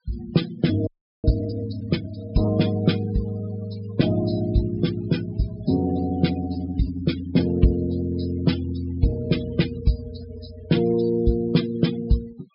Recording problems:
low-pass filter; nothing above 5.5 kHz
noise reduction artefacts; signal-to-artefact ratio 16 dB
frozen audio; at 1 s

